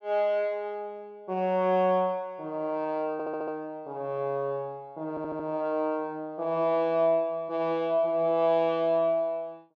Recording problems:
audio stuttering; at 3 s and at 5 s

